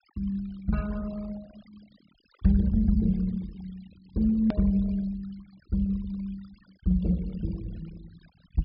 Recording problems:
treble cut off; nothing above 5.5 kHz
denoising artefacts; signal-to-artefact ratio 25 dB
hard cut with a click; at 4.5 s

